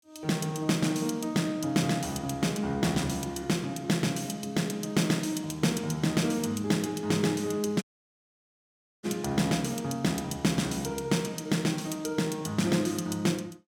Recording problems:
audio cutting out; at 8 s for 1 s

